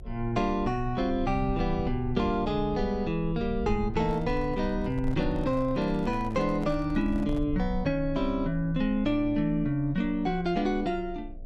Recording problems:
electrical hum; 60 Hz, harmonics up to 720 Hz, SNR 27 dB
low-frequency rumble; below 64 Hz, strongest tone 26 Hz, SNR 12 dB
microphone handling noise; from 4 to 7.5 s; peak -11 dB vs average level

